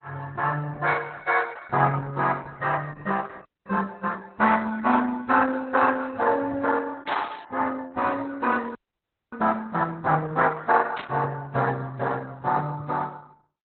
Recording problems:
lossy codec; Opus, log-spectral distance 4 dB, nothing above 4.1 kHz
frozen audio; at 3.5 s and at 9 s for 0.5 s
static burst; at 7 s and at 11 s; peak -4 dB vs average level

